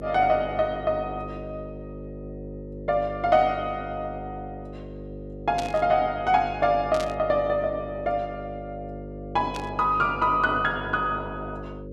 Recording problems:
hum; 50 Hz, harmonics up to 550 Hz, SNR 13 dB
static burst; at 5.5 s, at 7 s and at 9.5 s; peak -6 dB vs average level

